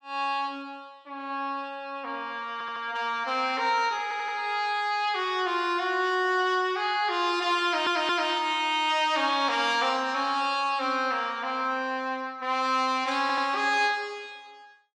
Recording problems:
audio stuttering; 4 times, first at 2.5 s

